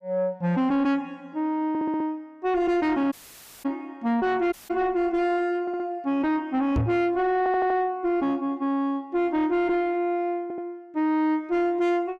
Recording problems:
distorted audio; soft clipping, signal-to-distortion ratio 10 dB
stutter; 4 times, first at 1.5 s
dropout; at 3 s for 0.5 s and at 4.5 s
microphone bump; at 7 s; peak +4 dB vs average level

